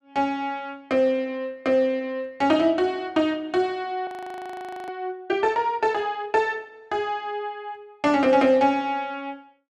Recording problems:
frozen audio; at 4 s for 1 s

